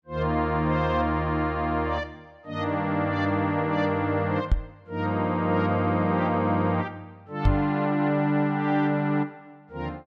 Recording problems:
knock on the microphone; at 4.5 s and at 7.5 s; peak +6 dB vs average level

